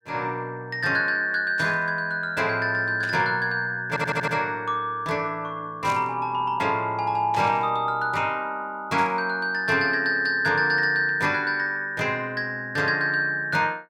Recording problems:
static burst; 5 times, first at 1.5 s; peak -10 dB vs average level
audio stuttering; at 4 s

